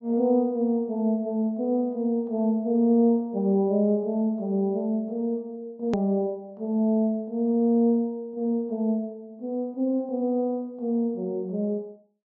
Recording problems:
low-pass filter; nothing above 8 kHz
edit click; at 6 s

